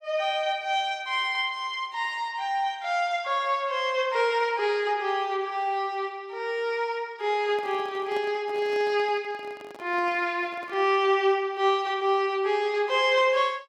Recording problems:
microphone handling noise; from 7.5 to 11 s; peak -11 dB vs average level

